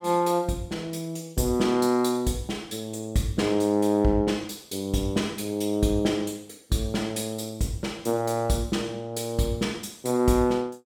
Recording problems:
none

